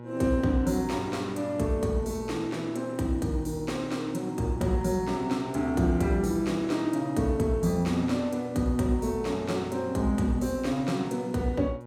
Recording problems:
hum; 60 Hz, harmonics up to 1.9 kHz, SNR 15 dB

